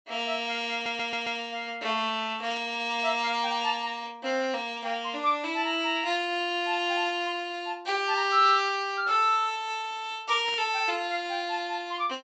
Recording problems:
treble cut off; nothing above 8 kHz
audio stuttering; at 0.5 s
static burst; at 2.5 s and at 10 s; peak -12 dB vs average level

